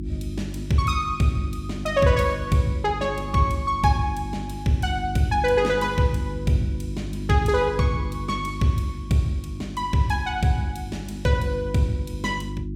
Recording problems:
electrical hum; 50 Hz, harmonics up to 350 Hz, SNR 10 dB

